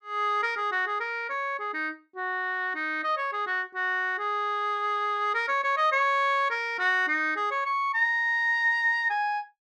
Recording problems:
none

